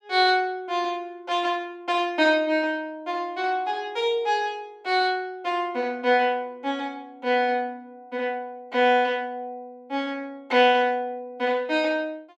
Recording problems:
none

